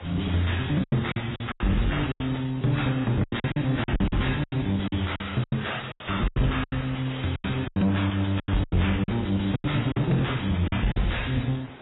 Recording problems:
lossy codec; MP3, then AAC, log-spectral distance 8 dB, nothing above 3.8 kHz
distorted audio; soft clipping, signal-to-distortion ratio 6 dB
background hiss; SNR 20 dB
packet loss; 14% of the sound replaced, filled with silence

